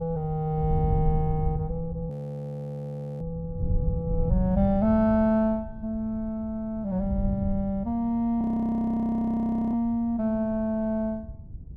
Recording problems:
wind on the microphone; below 110 Hz, SNR 7 dB
frozen audio; at 2 s for 1 s and at 8.5 s for 1.5 s

